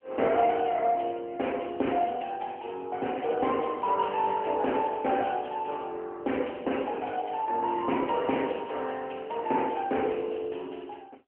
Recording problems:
phone line; 300 Hz to 3.1 kHz, AMR-NB

